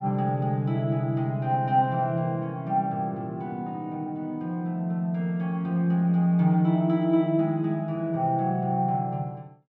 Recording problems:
none

